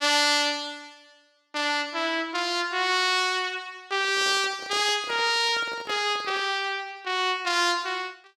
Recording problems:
handling noise; from 4 to 6.5 s; peak -9 dB vs average level

